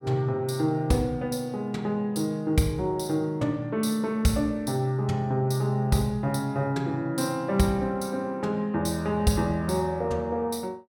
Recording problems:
none

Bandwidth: 17 kHz